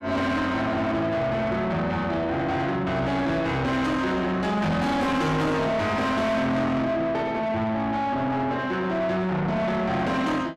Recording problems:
distortion; soft clipping, signal-to-distortion ratio 6 dB

